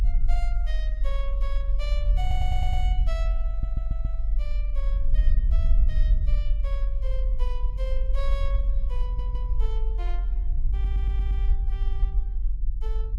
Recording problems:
rumble; below 44 Hz, strongest tone 20 Hz, SNR -14 dB
stutter; 4 times, first at 2 s

